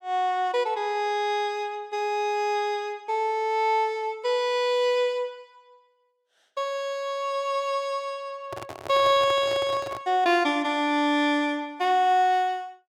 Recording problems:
microphone handling noise; from 8.5 to 10 s; peak -7 dB vs average level

